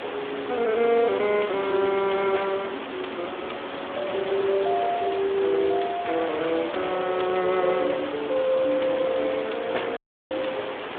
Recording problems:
telephone audio; 280 Hz to 3.6 kHz, Speex
background hiss; SNR 8 dB
wind on the microphone; below 780 Hz, SNR 25 dB
dropout; at 10 s

